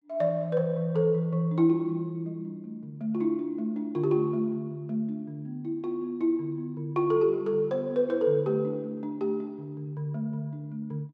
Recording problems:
none

